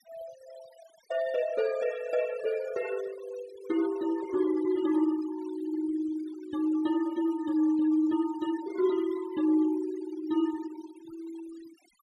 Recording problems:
noise reduction artefacts; signal-to-artefact ratio 18 dB

